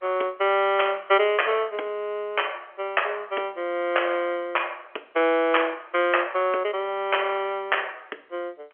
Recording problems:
phone line; 280 Hz to 3.3 kHz, G.711

